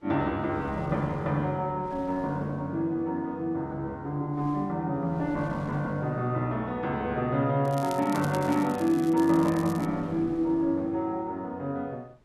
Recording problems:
wind on the microphone; below 640 Hz, SNR 22 dB
crackle; from 7.5 to 10 s; loose cable, SNR 18 dB

